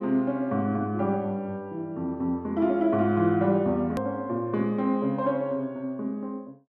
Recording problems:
edit click; at 4 s

